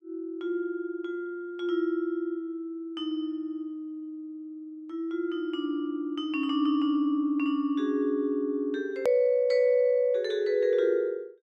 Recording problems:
edit click; at 9 s

